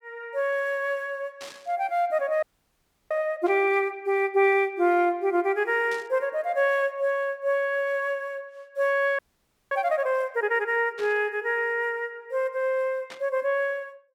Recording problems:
burst of static; 5 times, first at 1.5 s; peak -11 dB vs average level
frozen audio; at 2.5 s for 0.5 s and at 9 s for 0.5 s

